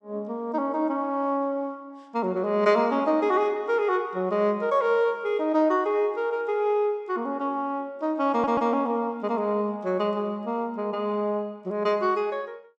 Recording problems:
stutter; at 8.5 s

